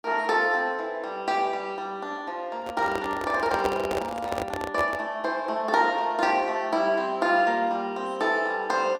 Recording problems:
microphone handling noise; from 2.5 to 5 s; peak +1 dB vs average level

